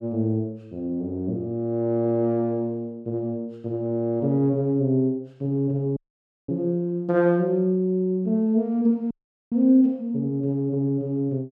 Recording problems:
audio cutting out; at 6 s for 0.5 s and at 9 s

